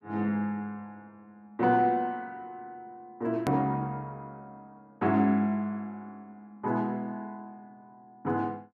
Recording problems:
edit click; at 3.5 s

